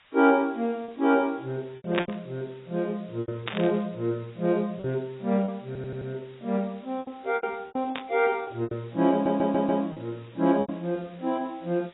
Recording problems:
lossy codec; AAC, log-spectral distance 6 dB, nothing above 3.6 kHz
hiss; SNR 28 dB
lost packets; 8% of the sound replaced, filled with repeated pitch periods
burst of static; at 2 s, at 3.5 s and at 8 s; peak +3 dB vs average level
audio stuttering; at 5.5 s and at 9 s

